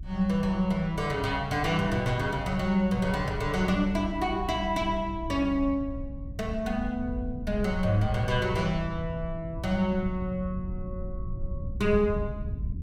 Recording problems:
low-frequency rumble; below 96 Hz, SNR 10 dB

